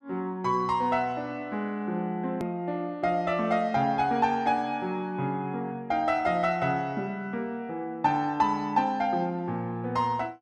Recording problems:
hard cut with a click; at 2.5 s

